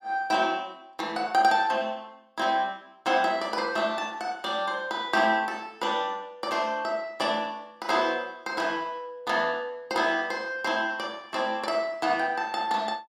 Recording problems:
none

